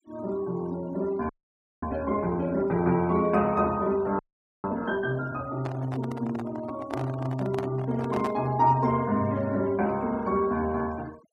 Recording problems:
denoising artefacts; signal-to-artefact ratio 23 dB
frozen audio; at 1.5 s for 0.5 s and at 4 s
microphone handling noise; from 5.5 to 8.5 s; peak -3 dB vs average level

